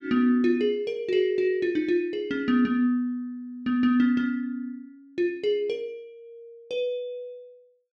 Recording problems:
none

